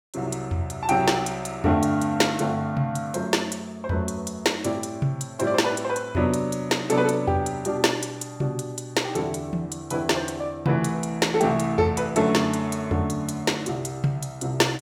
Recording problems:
none

